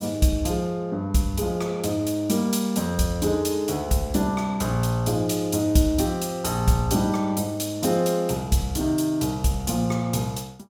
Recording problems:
none

